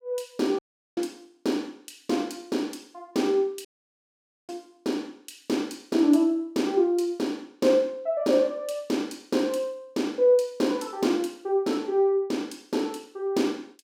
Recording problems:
audio cutting out; at 0.5 s and at 3.5 s for 1 s

